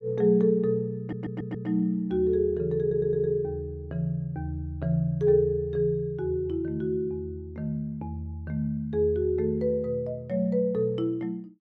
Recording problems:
audio stuttering; at 1 s and at 3 s

